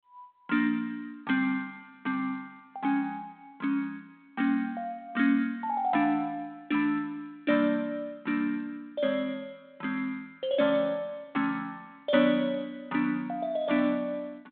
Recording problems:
phone line; 240 Hz to 3.7 kHz, G.726

